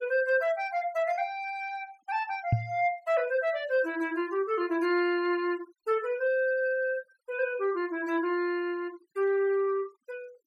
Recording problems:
denoising artefacts; signal-to-artefact ratio 25 dB
knock on the microphone; at 2.5 s; peak +7 dB vs average level

